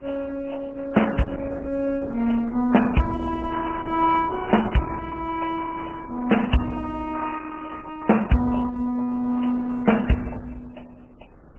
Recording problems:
codec artefacts; MP3, then Opus, log-spectral distance 6 dB, nothing above 3 kHz
wind noise; below 510 Hz, SNR 21 dB

